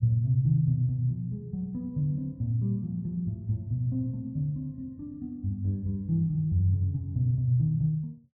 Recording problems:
none

